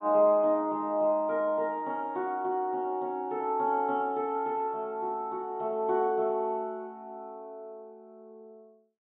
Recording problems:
low-pass filter; nothing above 4 kHz

